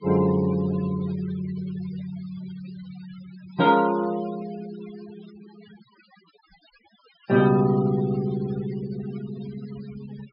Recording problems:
low-pass filter; nothing above 5.5 kHz
denoising artefacts; signal-to-artefact ratio 19 dB

